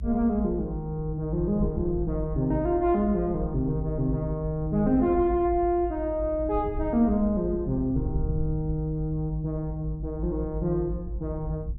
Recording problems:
low-frequency rumble; below 64 Hz, SNR 8 dB

